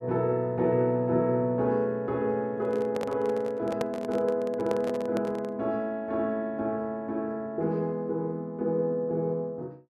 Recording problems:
microphone handling noise; from 2.5 to 5.5 s; peak +1 dB vs average level

